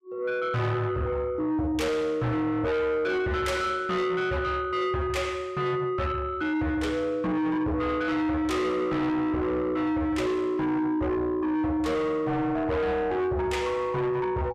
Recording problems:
distortion; soft clipping, signal-to-distortion ratio 8 dB

